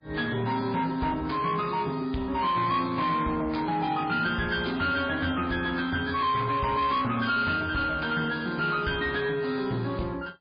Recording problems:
lossy codec; MP3, log-spectral distance 5 dB, nothing above 4.8 kHz
distortion; soft clipping, signal-to-distortion ratio 11 dB

